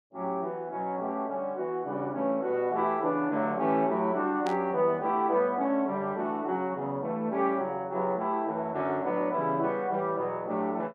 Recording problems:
static burst; at 4.5 s; peak -8 dB vs average level

